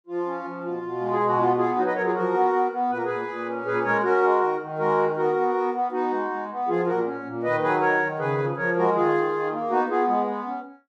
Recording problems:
none

